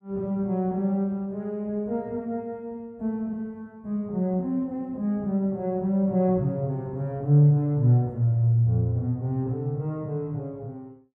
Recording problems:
none

